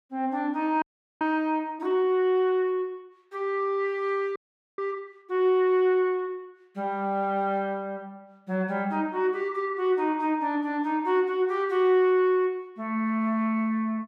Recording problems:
frozen audio; at 1 s and at 4.5 s

